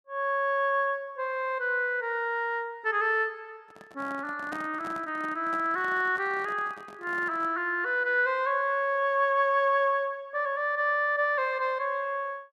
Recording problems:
microphone handling noise; from 3.5 to 7.5 s; peak -8 dB vs average level

